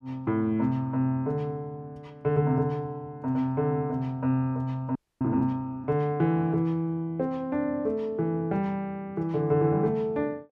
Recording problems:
audio freezing; at 5 s

